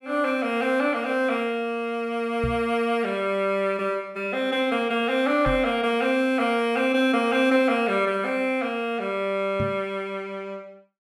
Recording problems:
microphone thump; at 2.5 s, at 5.5 s and at 9.5 s; peak -2 dB vs average level

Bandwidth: 15.5 kHz